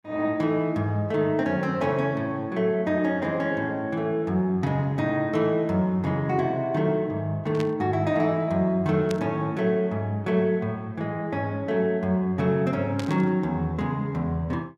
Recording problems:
burst of static; at 7.5 s, at 9 s and at 13 s; peak -7 dB vs average level

